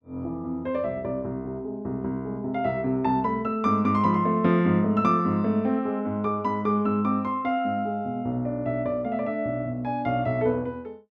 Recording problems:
none

